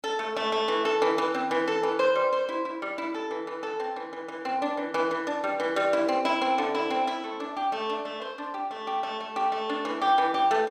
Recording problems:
none

